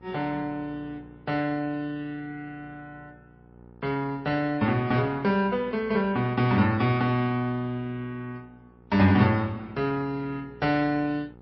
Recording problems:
codec artefacts; MP3, then Vorbis, log-spectral distance 2 dB, nothing above 5.2 kHz
mains hum; 60 Hz, harmonics up to 1.3 kHz, SNR 25 dB

